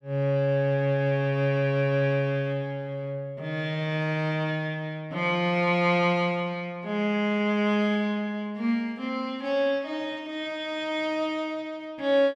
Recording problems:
none

